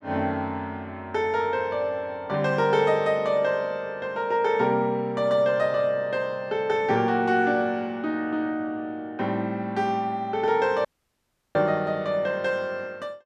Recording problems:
dropout; at 11 s for 0.5 s

